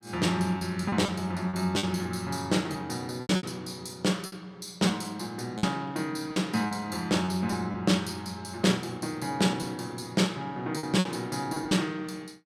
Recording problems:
lost packets; 6% of the sound replaced, filled with repeated pitch periods

